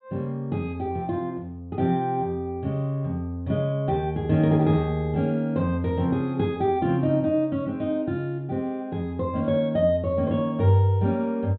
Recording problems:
treble cut off; nothing above 4 kHz

